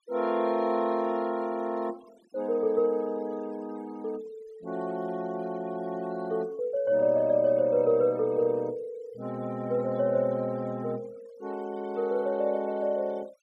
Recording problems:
noise reduction artefacts; signal-to-artefact ratio 25 dB

